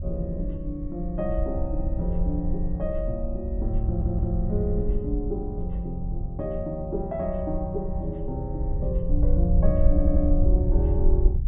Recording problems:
treble missing; nothing above 4 kHz
wind noise; below 68 Hz, SNR -1 dB
stutter; at 4 s and at 10 s

